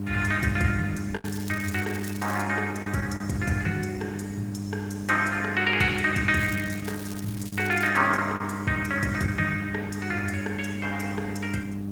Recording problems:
lossy codec; Opus, log-spectral distance 4 dB, nothing above 19 kHz
mains hum; 50 Hz, harmonics up to 700 Hz, SNR 5 dB
hiss; SNR 25 dB
packet loss; 3% of the sound replaced, filled with the last packet
crackling; from 1.5 to 2.5 s and from 6.5 to 8 s; loose cable, SNR 15 dB

